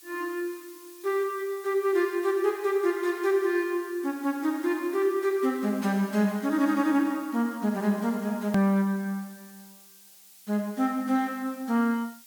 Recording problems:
background hiss; SNR 22 dB
hard cut with a click; at 8.5 s

